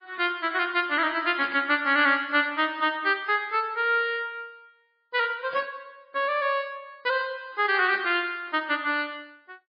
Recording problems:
lossy compression; MP3, log-spectral distance 2 dB, nothing above 4.5 kHz
burst of static; at 1.5 s, at 5.5 s and at 8 s; peak -9 dB vs average level

